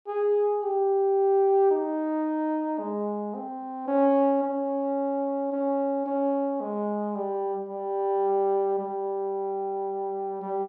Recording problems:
none

